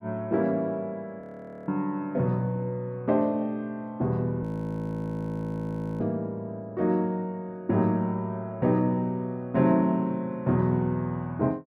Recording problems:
audio freezing; at 1 s and at 4.5 s for 1.5 s

